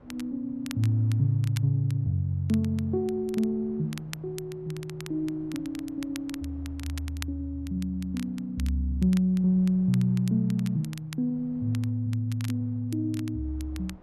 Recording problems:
wind on the microphone; below 570 Hz, SNR 28 dB
crackling; vinyl, SNR 19 dB

